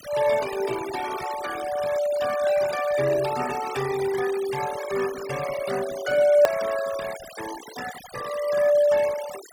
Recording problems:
noise reduction artefacts; signal-to-artefact ratio 13 dB
hard cut with a click; at 6.5 s

